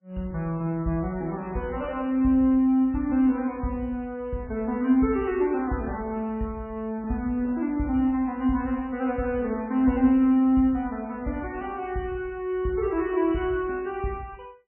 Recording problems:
codec artefacts; MP3, log-spectral distance 3 dB, nothing above 2.6 kHz

